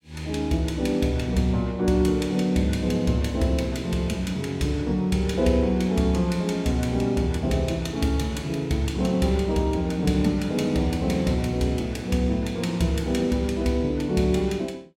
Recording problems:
none

